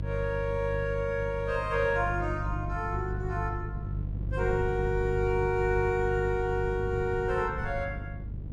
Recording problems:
mains hum; 50 Hz, harmonics up to 350 Hz, SNR 5 dB
wind noise; below 160 Hz, SNR 12 dB

